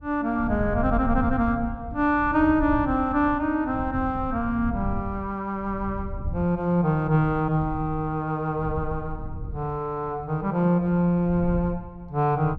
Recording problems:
wind noise; below 110 Hz, SNR 11 dB

